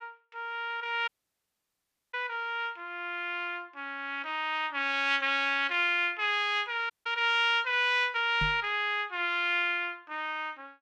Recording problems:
audio cutting out; at 1 s for 1 s and at 7 s
knock on the microphone; at 8.5 s; peak -3 dB vs average level

